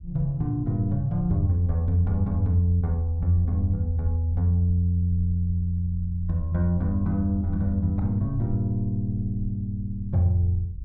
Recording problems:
low-frequency rumble; below 62 Hz, SNR 15 dB

